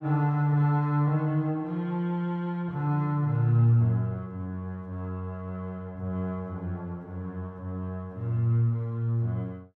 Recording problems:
none

